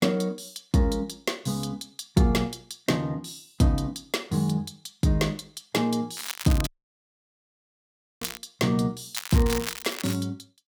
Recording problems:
crackling; from 6 to 8.5 s and from 9 to 10 s; loose cable, SNR 8 dB
dropout; at 6.5 s for 1.5 s

